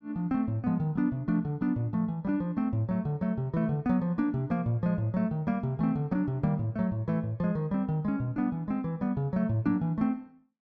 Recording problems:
none

